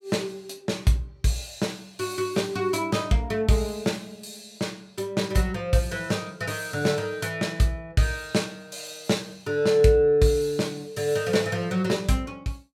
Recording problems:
none

